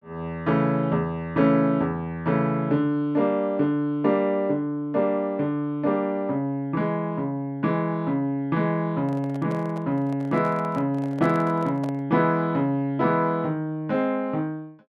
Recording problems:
microphone handling noise; from 9 to 12 s; peak -7 dB vs average level

